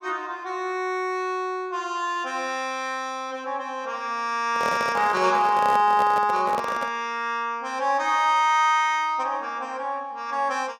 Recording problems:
microphone handling noise; from 4.5 to 7 s; peak -3 dB vs average level

